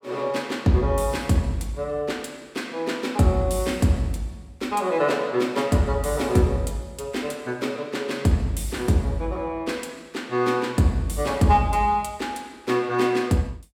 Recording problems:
none

